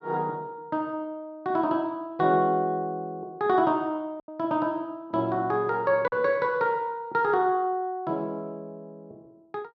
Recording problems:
packet loss; 1.3% of the sound replaced, filled with silence

